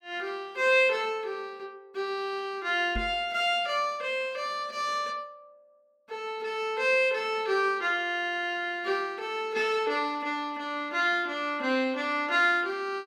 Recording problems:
microphone bump; at 3 s; peak -3 dB vs average level

